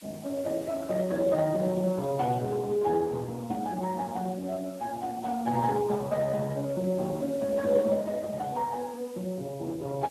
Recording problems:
codec artefacts; Vorbis, then Speex, log-spectral distance 3 dB
hiss; SNR 22 dB

